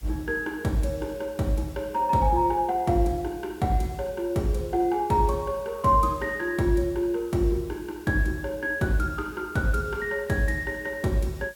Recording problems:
background hiss; slope 0 dB per octave, SNR 26 dB

